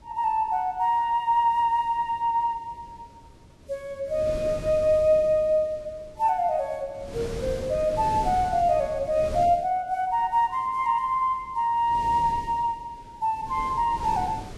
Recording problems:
lossy codec; Vorbis, log-spectral distance 2 dB, nothing above 12.3 kHz
wind on the microphone; below 420 Hz, SNR 14 dB

